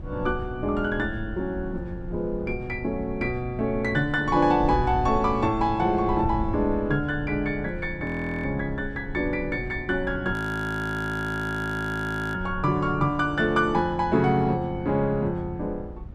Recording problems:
wind on the microphone; below 110 Hz, SNR 12 dB
frozen audio; at 8 s and at 10 s for 2 s

